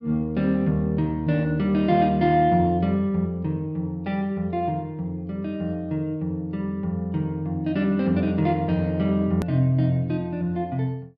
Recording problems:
click at an edit; at 9.5 s

